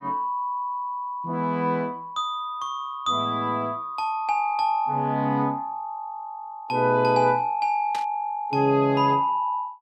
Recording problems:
static burst; at 8 s; peak -7 dB vs average level

